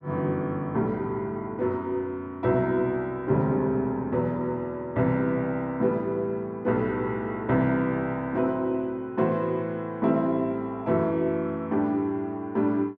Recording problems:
none

